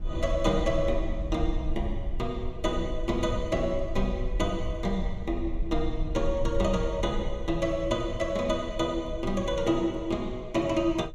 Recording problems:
rumble; below 54 Hz, strongest tone 18 Hz, SNR 7 dB

